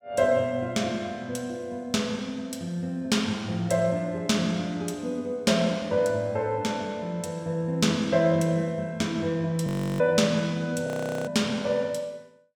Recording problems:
frozen audio; at 9.5 s and at 11 s

